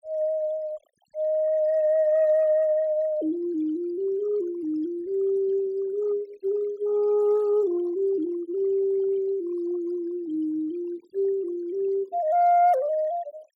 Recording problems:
noise reduction artefacts; signal-to-artefact ratio 26 dB

